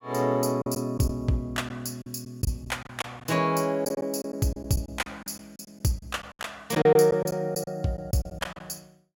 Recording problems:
lost packets; 11% of the sound replaced, filled with silence

